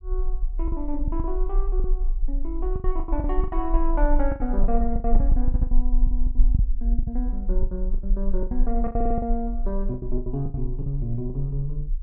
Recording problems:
rumble; below 40 Hz, strongest tone 24 Hz, SNR -3 dB
packet loss; 16% of the sound replaced, filled with the last packet
audio stuttering; at 5.5 s and at 9 s

